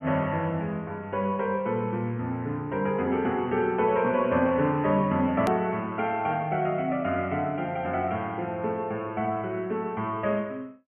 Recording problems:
treble cut off; nothing above 3 kHz
edit click; at 5.5 s

